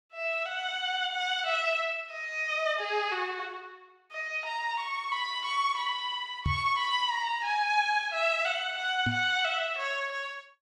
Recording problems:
microphone bump; at 6.5 s and at 9 s; peak +2 dB vs average level

